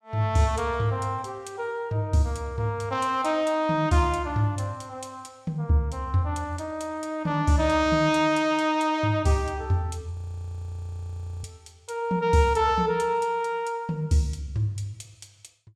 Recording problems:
frozen audio; at 10 s for 1.5 s

